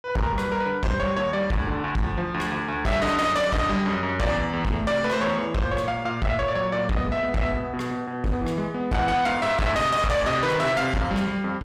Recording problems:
distorted audio; soft clipping, signal-to-distortion ratio 6 dB

